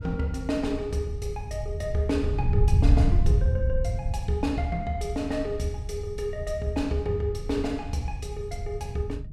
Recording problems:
wind noise; below 98 Hz, SNR 0 dB

